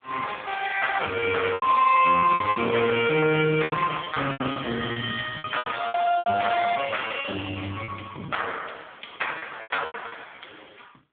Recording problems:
phone line; 190 Hz to 3.5 kHz, AMR-NB
distortion; hard clipping, signal-to-distortion ratio 15 dB
lost packets; 11% of the sound replaced, filled with repeated pitch periods

